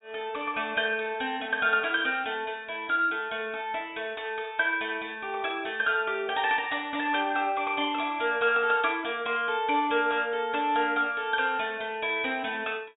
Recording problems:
treble cut off; nothing above 4 kHz

